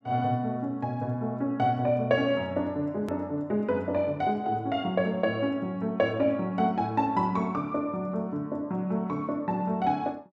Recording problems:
hard cut with a click; at 3 s

